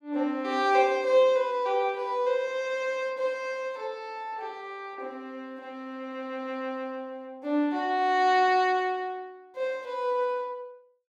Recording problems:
none

